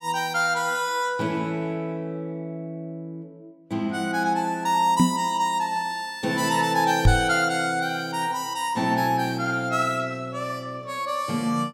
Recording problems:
microphone bump; at 5 s and at 7 s; peak +9 dB vs average level

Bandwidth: 16.5 kHz